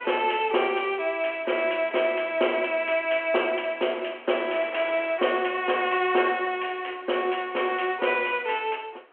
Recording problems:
phone line; 300 Hz to 3.3 kHz, G.726
wind on the microphone; below 2.3 kHz, SNR 22 dB

